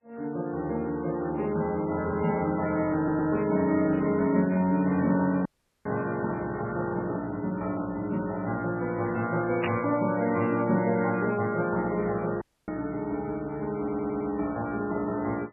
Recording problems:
lossy compression; MP3, log-spectral distance 3 dB
audio stuttering; at 3 s and at 14 s
audio cutting out; at 5.5 s and at 12 s
static burst; at 9.5 s; peak -2 dB vs average level

